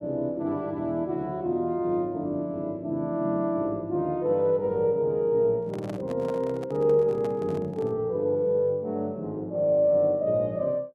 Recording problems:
microphone handling noise; from 5.5 to 8 s; peak -9 dB vs average level

